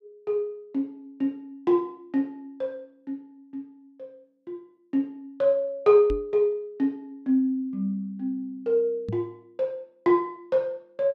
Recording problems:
knock on the microphone; at 6 s and at 9 s; peak -2 dB vs average level

